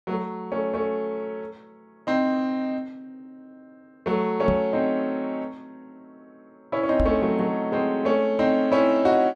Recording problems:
microphone thump; at 4.5 s and at 7 s; peak +1 dB vs average level

